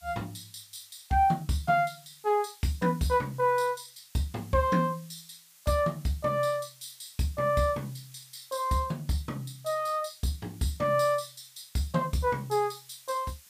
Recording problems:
hiss; slope +4 dB per octave, SNR 24 dB

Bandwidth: 15 kHz